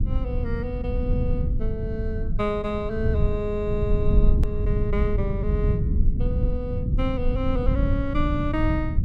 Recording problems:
rumble; below 98 Hz, SNR -3 dB
edit click; at 4.5 s

